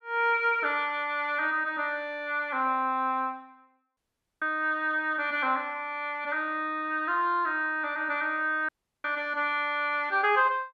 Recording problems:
dropout; at 4 s and at 8.5 s

